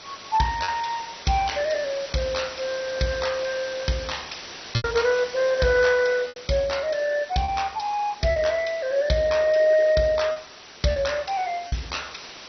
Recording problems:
codec artefacts; MP2, log-spectral distance 13 dB, nothing above 6 kHz
background hiss; slope -1 dB per octave, SNR 15 dB
packet loss; 4% of the sound replaced, filled with repeated pitch periods

